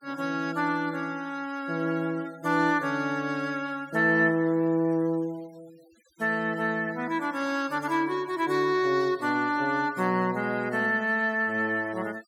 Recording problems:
denoising artefacts; signal-to-artefact ratio 25 dB

